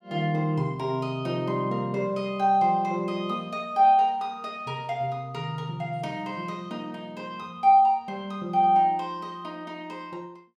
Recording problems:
none

